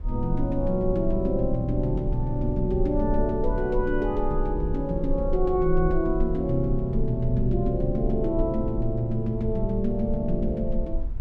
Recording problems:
rumble; below 46 Hz, strongest tone 18 Hz, SNR 7 dB

